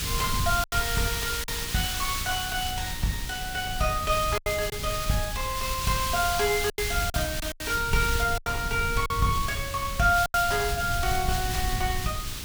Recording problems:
hum; 60 Hz, harmonics up to 780 Hz, SNR 21 dB
hiss; SNR 4 dB
low-frequency rumble; below 100 Hz, SNR 8 dB
lost packets; 5% of the sound replaced, filled with silence

